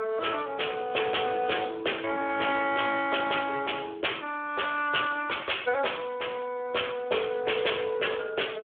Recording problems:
phone line; 340 Hz to 3.5 kHz, Speex

